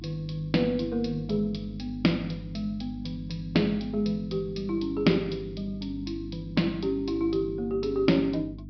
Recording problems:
treble cut off; nothing above 5.5 kHz
mains hum; 50 Hz, harmonics up to 300 Hz, SNR 13 dB

